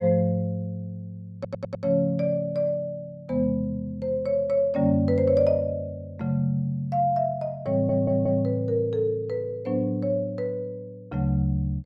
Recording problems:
stutter; at 1.5 s and at 7.5 s

